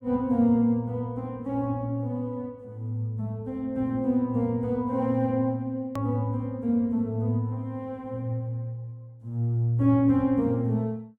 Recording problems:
hard cut with a click; at 6 s

